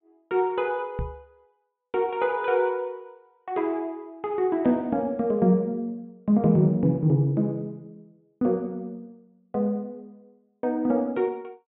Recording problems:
treble cut off; nothing above 4 kHz
microphone bump; at 1 s; peak -3 dB vs average level

